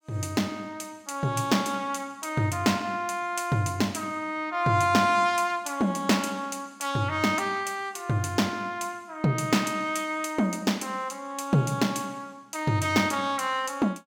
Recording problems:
none

